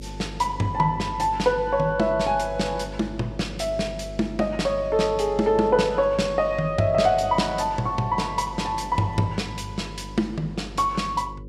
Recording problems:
electrical hum; 50 Hz, harmonics up to 550 Hz, SNR 14 dB

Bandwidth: 14.5 kHz